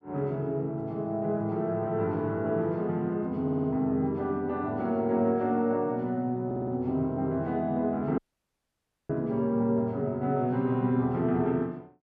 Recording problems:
audio stuttering; at 3.5 s and at 6.5 s
audio cutting out; at 8 s for 1 s

